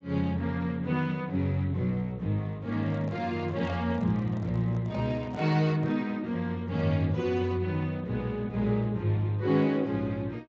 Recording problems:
lossy codec; Speex, log-spectral distance 2 dB, nothing above 16.6 kHz
handling noise; from 2.5 to 6 s; peak -10 dB vs average level

